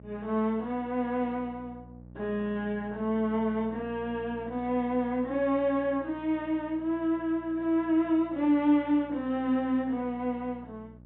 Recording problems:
treble missing; nothing above 4 kHz
hum; 60 Hz, harmonics up to 600 Hz, SNR 21 dB

